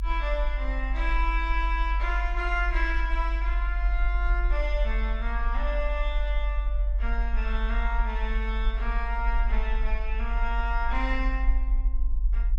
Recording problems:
low-frequency rumble; below 48 Hz, strongest tone 46 Hz, SNR -3 dB

